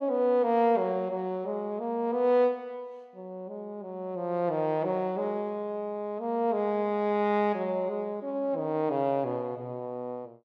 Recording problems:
none

